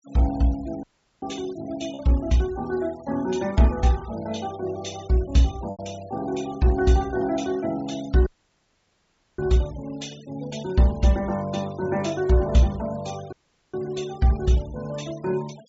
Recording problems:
treble missing; nothing above 8 kHz
denoising artefacts; signal-to-artefact ratio 21 dB
packet loss; 0.9% of the sound replaced, filled with repeated pitch periods
audio cutting out; at 1 s, at 8.5 s for 1 s and at 13 s

